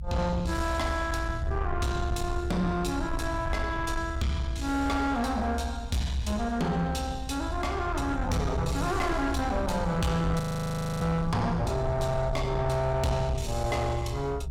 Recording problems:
distortion; soft clipping, signal-to-distortion ratio 10 dB
low-frequency rumble; below 110 Hz, SNR 5 dB
audio freezing; at 10 s for 0.5 s

